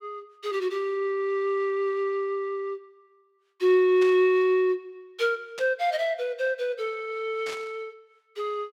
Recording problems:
burst of static; at 4 s, at 5.5 s and at 7.5 s; peak -8 dB vs average level

